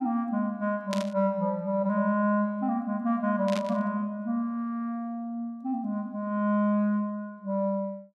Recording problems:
static burst; at 1 s and at 3.5 s; peak -3 dB vs average level

